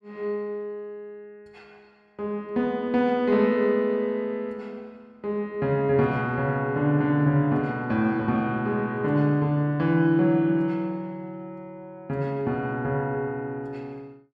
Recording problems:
none

